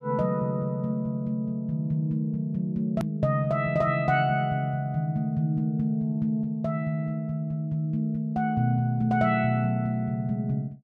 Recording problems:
hard cut with a click; at 3 s

